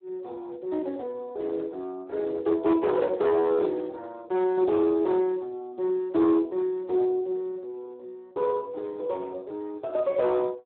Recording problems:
telephone audio; 280 Hz to 2.9 kHz, Speex
distortion; hard clipping, signal-to-distortion ratio 11 dB

